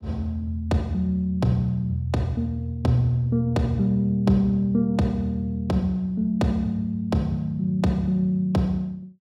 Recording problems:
none

